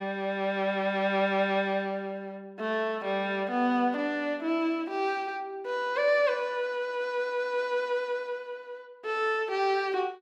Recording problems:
none

